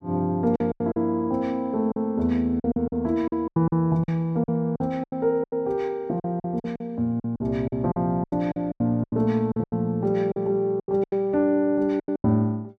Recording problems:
lost packets; 14% of the sound replaced, filled with silence

